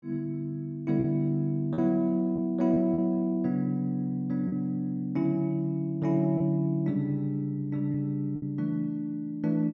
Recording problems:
lost packets; 3% of the sound replaced, filled with repeated pitch periods

